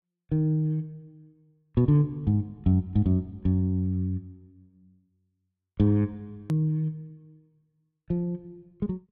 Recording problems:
edit click; at 6.5 s

